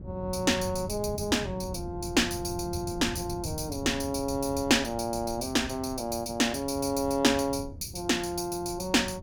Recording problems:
wind on the microphone; below 160 Hz, SNR 13 dB

